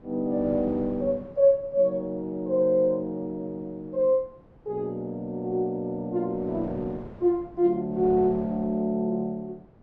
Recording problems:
wind noise; below 480 Hz, SNR 20 dB

